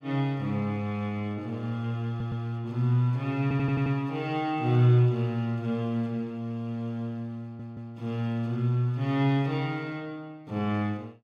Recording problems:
stutter; at 2 s, at 3.5 s and at 7.5 s

